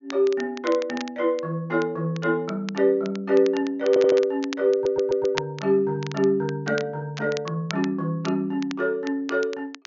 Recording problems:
treble missing; nothing above 6.9 kHz
crackling; vinyl, SNR 16 dB
stutter; at 4 s and at 4.5 s

